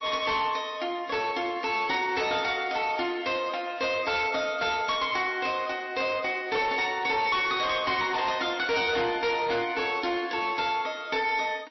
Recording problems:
codec artefacts; MP3, log-spectral distance 5 dB, nothing above 5.7 kHz
distorted audio; hard clipping, signal-to-distortion ratio 11 dB

